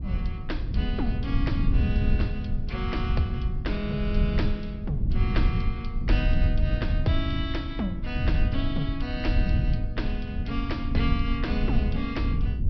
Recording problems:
low-pass filter; nothing above 5.5 kHz
low-frequency rumble; below 100 Hz, SNR -4 dB

